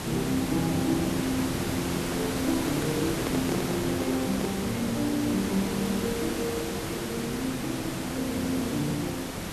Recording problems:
background hiss; slope -4 dB per octave, SNR 2 dB
handling noise; from 2.5 to 4.5 s; peak 0 dB vs average level

